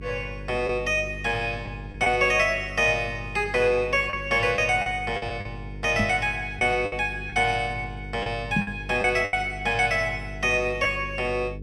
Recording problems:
hum; 50 Hz, harmonics up to 500 Hz, SNR 14 dB
packet loss; 5% of the sound replaced, filled with the last packet
microphone bump; at 6 s and at 8.5 s; peak +2 dB vs average level

